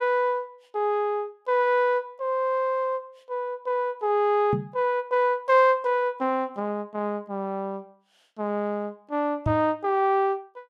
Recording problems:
microphone bump; at 4.5 s and at 9.5 s; peak +1 dB vs average level

